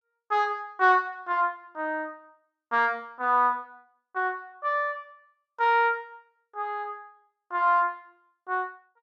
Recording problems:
none

